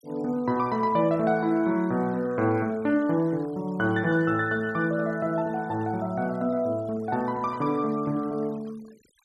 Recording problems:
denoising artefacts; signal-to-artefact ratio 26 dB

